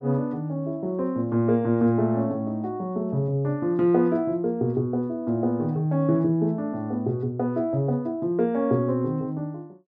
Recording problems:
none

